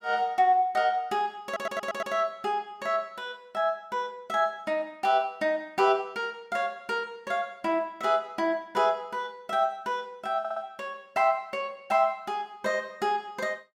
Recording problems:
audio stuttering; at 1.5 s and at 10 s

